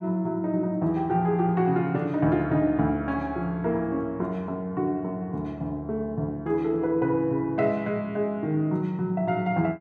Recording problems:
none

